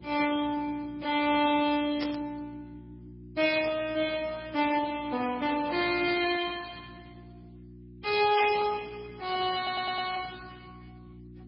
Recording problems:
lossy codec; Speex, then MP3, log-spectral distance 4 dB, nothing above 5.2 kHz
electrical hum; 60 Hz, harmonics up to 360 Hz, SNR 20 dB
burst of static; 4 times, first at 2 s; peak -4 dB vs average level
audio stuttering; at 9.5 s

